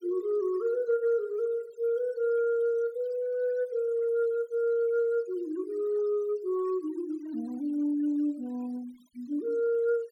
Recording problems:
noise reduction artefacts; signal-to-artefact ratio 26 dB

